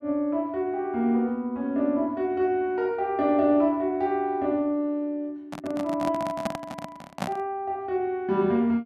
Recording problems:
microphone handling noise; from 5.5 to 7.5 s; peak +1 dB vs average level

